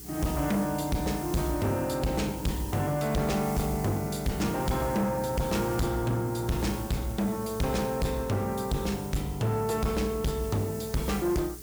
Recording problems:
distorted audio; soft clipping, signal-to-distortion ratio 7 dB
mains hum; 60 Hz, harmonics up to 420 Hz, SNR 17 dB
hiss; SNR 14 dB

